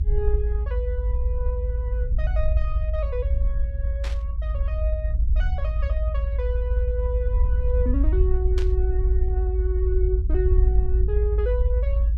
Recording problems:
low-frequency rumble; below 62 Hz, strongest tone 54 Hz, SNR -8 dB
static burst; at 4 s and at 8.5 s; peak -1 dB vs average level

